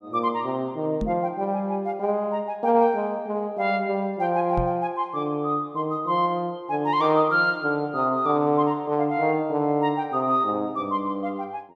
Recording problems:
knock on the microphone; at 1 s and at 4.5 s; peak -1 dB vs average level

